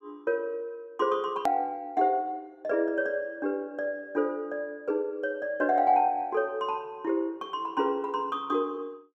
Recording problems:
hard cut with a click; at 1.5 s

